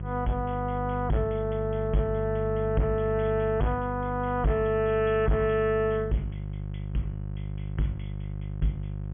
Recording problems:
low-pass filter; nothing above 3.3 kHz
distorted audio; soft clipping, signal-to-distortion ratio 10 dB
hum; 50 Hz, harmonics up to 550 Hz, SNR 6 dB

